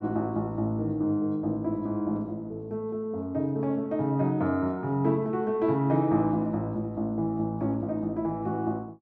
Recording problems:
none

